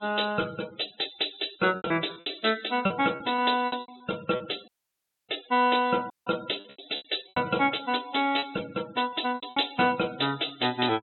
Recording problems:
treble missing; nothing above 4 kHz
noise reduction artefacts; signal-to-artefact ratio 19 dB
packet loss; 9% of the sound replaced, filled with repeated pitch periods
audio cutting out; at 4.5 s for 0.5 s and at 6 s

